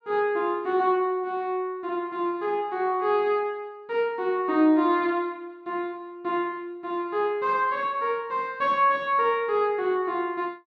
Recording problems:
none

